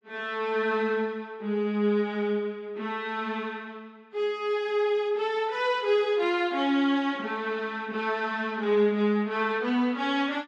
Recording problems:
none

